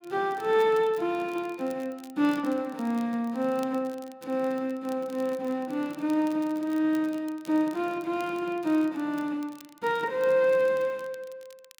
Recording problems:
crackle; vinyl, SNR 26 dB

